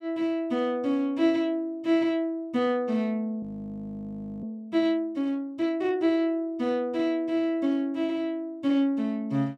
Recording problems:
audio freezing; at 3.5 s for 1 s

